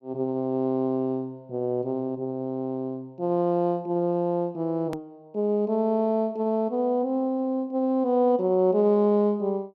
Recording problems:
hard cut with a click; at 5 s

